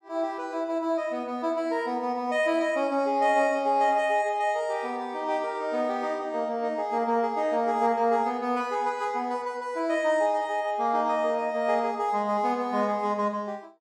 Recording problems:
none

